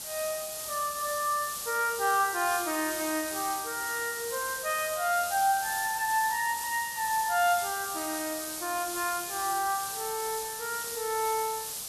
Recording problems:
background hiss; SNR 4 dB

